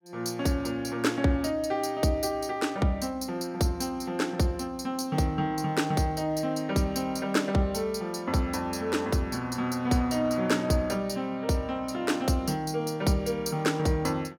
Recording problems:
none

